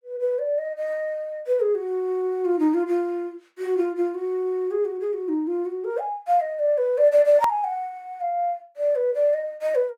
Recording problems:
click at an edit; at 7.5 s

